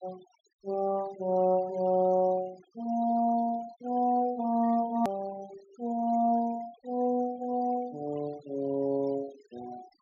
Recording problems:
treble missing; nothing above 7.1 kHz
denoising artefacts; signal-to-artefact ratio 23 dB
edit click; at 5 s

